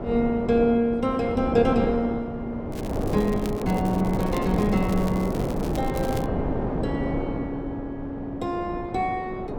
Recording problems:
wind on the microphone; below 510 Hz, SNR 3 dB
crackle; from 2.5 to 6.5 s; loose cable, SNR 17 dB

